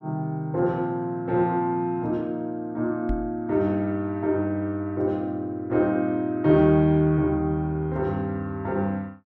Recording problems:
microphone bump; at 3 s; peak -1 dB vs average level

